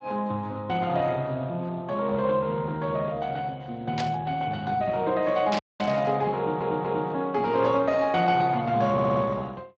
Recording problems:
lossy compression; Speex, log-spectral distance 3 dB
burst of static; at 4 s and at 5.5 s; peak -1 dB vs average level
audio cutting out; at 5.5 s
audio stuttering; at 6.5 s and at 9 s

